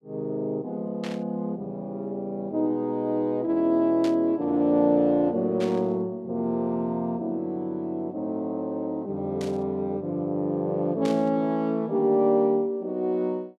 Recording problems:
static burst; 5 times, first at 1 s; peak -8 dB vs average level

